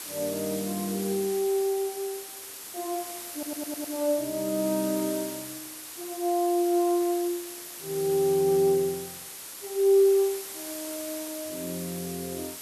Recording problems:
background hiss; slope 0 dB per octave, SNR 10 dB
audio stuttering; at 3.5 s

